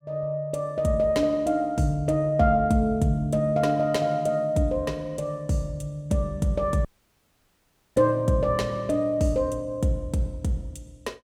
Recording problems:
dropout; at 7 s for 1 s

